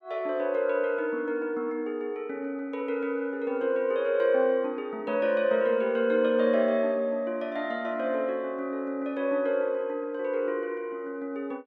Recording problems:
none

